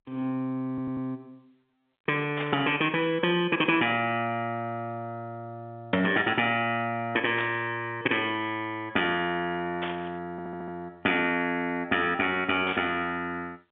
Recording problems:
phone line; 240 Hz to 3.5 kHz, G.711
stutter; at 0.5 s and at 10 s
static burst; 4 times, first at 2.5 s; peak -3 dB vs average level

